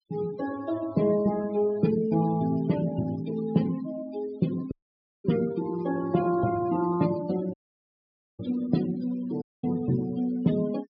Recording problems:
low-pass filter; nothing above 5.5 kHz
denoising artefacts; signal-to-artefact ratio 16 dB
audio cutting out; at 4.5 s for 0.5 s, at 7.5 s for 1 s and at 9.5 s

